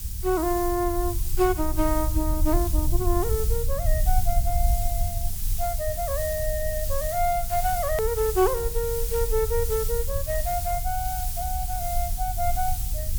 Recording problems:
background hiss; SNR 5 dB
rumble; below 64 Hz, SNR 3 dB
hard cut with a click; at 8 s

